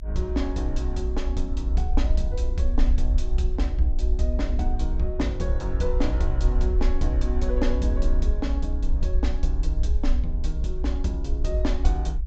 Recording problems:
low-pass filter; nothing above 8 kHz
rumble; below 58 Hz, strongest tone 24 Hz, SNR -4 dB

